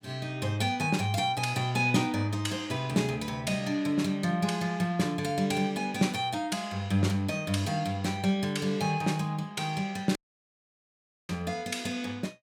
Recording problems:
audio cutting out; at 10 s for 1 s

